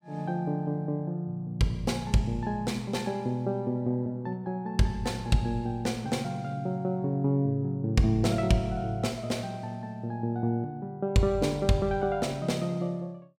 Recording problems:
none

